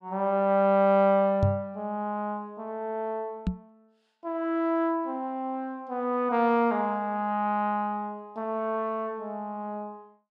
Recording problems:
knock on the microphone; at 1.5 s and at 3.5 s; peak +6 dB vs average level

